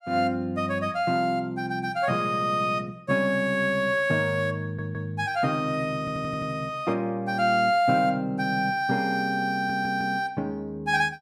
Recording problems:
audio stuttering; at 4.5 s, at 6 s and at 9.5 s

